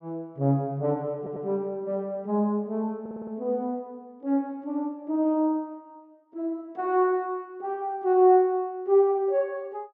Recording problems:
audio stuttering; at 1 s and at 3 s

